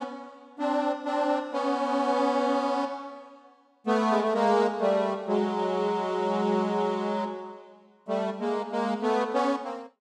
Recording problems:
none

